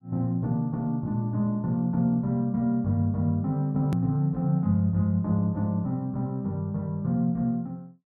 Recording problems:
edit click; at 4 s

